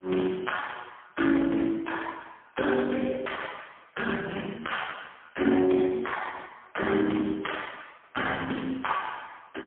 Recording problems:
telephone audio; 240 Hz to 3.3 kHz, AMR-NB, then MP3

